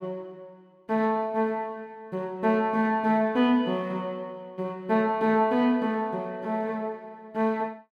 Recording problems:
none

